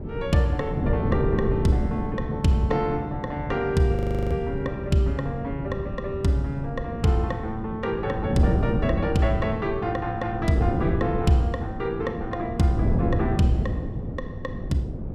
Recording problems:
wind noise; below 250 Hz, SNR 4 dB
audio freezing; at 4 s

